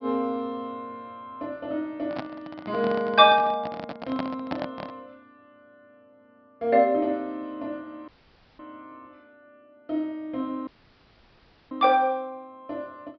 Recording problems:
low-pass filter; nothing above 5.5 kHz
handling noise; from 2 to 5 s; peak -1 dB vs average level
dropout; at 8 s for 0.5 s and at 11 s for 1 s

